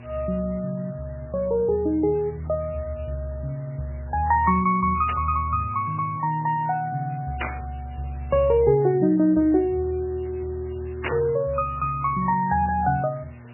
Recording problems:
lossy compression; MP3, log-spectral distance 5 dB, nothing above 2.5 kHz
electrical hum; 60 Hz, harmonics up to 1.2 kHz, SNR 20 dB
hiss; SNR 28 dB
burst of static; at 5 s, at 7.5 s and at 11 s; peak 0 dB vs average level

